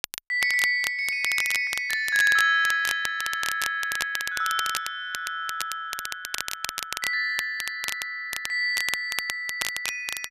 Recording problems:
crackle; vinyl, SNR 8 dB

